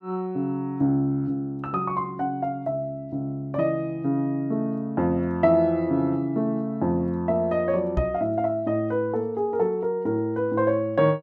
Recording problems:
microphone bump; at 8 s; peak +3 dB vs average level

